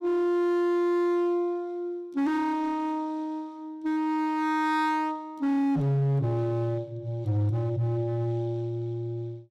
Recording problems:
distortion; hard clipping, signal-to-distortion ratio 10 dB

